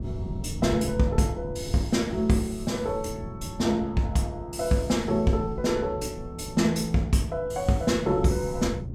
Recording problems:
wind on the microphone; below 170 Hz, SNR 11 dB

